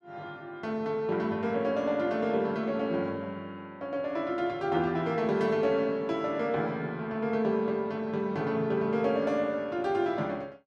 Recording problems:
none

